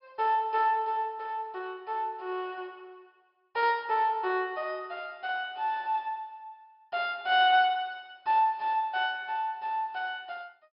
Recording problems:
treble cut off; nothing above 5.5 kHz

